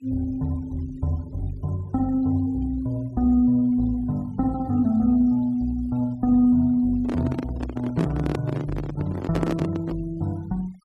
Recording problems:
denoising artefacts; signal-to-artefact ratio 27 dB
handling noise; from 7 to 10 s; peak +2 dB vs average level

